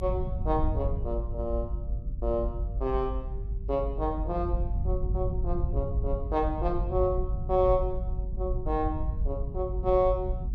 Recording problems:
rumble; below 76 Hz, SNR 2 dB

